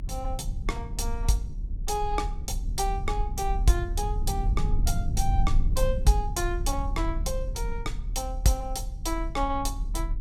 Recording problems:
rumble; below 62 Hz, SNR 1 dB

